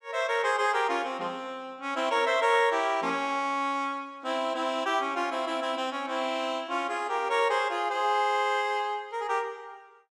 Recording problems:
none

